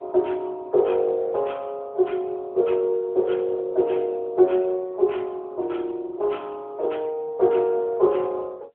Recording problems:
telephone audio; 320 Hz to 3.5 kHz, AMR-NB

